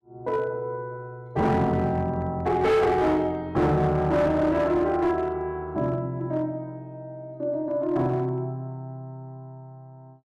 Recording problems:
distortion; hard clipping, uneven, signal-to-distortion ratio 10 dB

